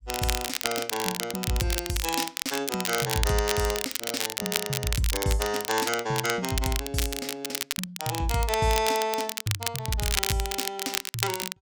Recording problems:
crackling; vinyl, SNR 1 dB

